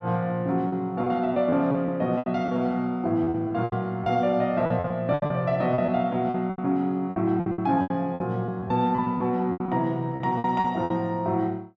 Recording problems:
lost packets; 13% of the sound replaced, filled with repeated pitch periods

